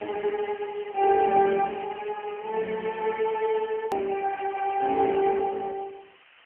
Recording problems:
telephone audio; 240 Hz to 3.1 kHz, AMR-NB
background hiss; SNR 27 dB
edit click; at 4 s

